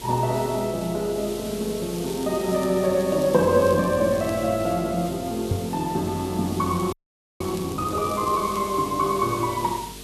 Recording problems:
hum; 50 Hz, harmonics up to 450 Hz, SNR 20 dB
hiss; SNR 14 dB
crackle; from 2 to 4.5 s and from 6.5 to 8.5 s; loose cable, SNR 22 dB
microphone bump; at 5.5 s; peak +2 dB vs average level
frozen audio; at 7 s

